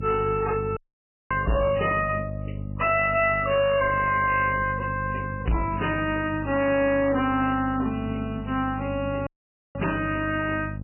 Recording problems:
lossy codec; MP3, log-spectral distance 5 dB, nothing above 2.8 kHz
distortion; hard clipping, uneven, signal-to-distortion ratio 7 dB
hum; 50 Hz, harmonics up to 550 Hz, SNR 9 dB
audio cutting out; at 1 s for 0.5 s and at 9.5 s

